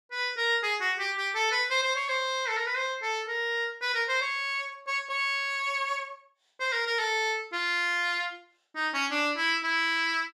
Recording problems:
none

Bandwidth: 15 kHz